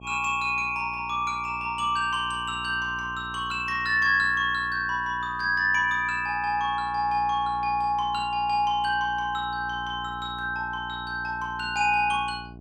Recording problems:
mains hum; 60 Hz, harmonics up to 780 Hz, SNR 19 dB

